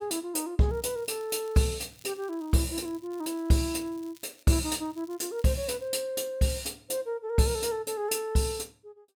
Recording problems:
crackle; from 0.5 to 4.5 s and from 5 to 6 s; loose cable, SNR 26 dB

